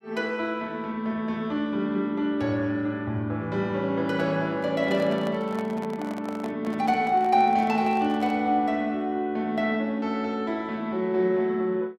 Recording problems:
handling noise; from 4.5 to 8.5 s; peak -7 dB vs average level

